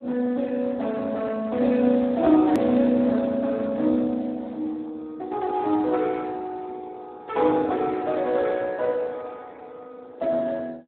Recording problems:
phone line; 170 Hz to 2.2 kHz, Speex
edit click; at 2.5 s

